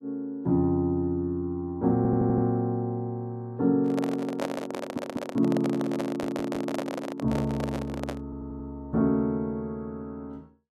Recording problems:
audio stuttering; 4 times, first at 2 s
handling noise; from 4 to 8 s; peak +1 dB vs average level

